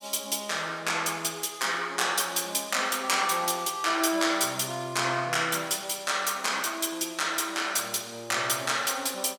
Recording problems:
none

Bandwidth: 17.5 kHz